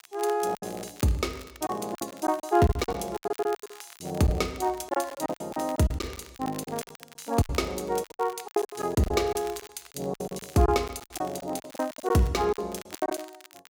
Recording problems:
crackle; vinyl, SNR 19 dB
lost packets; 17% of the sound replaced, filled with silence

